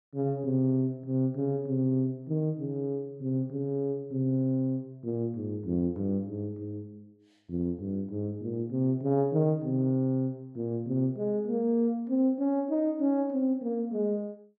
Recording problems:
none

